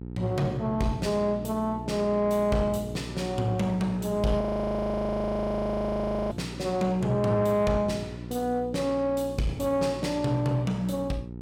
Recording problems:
distorted audio; soft clipping, signal-to-distortion ratio 11 dB
hum; 60 Hz, harmonics up to 900 Hz, SNR 12 dB
audio freezing; at 4.5 s for 2 s

